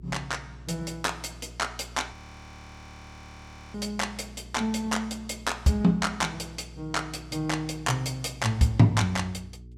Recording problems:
mains hum; 60 Hz, harmonics up to 420 Hz, SNR 18 dB
frozen audio; at 2 s for 1.5 s

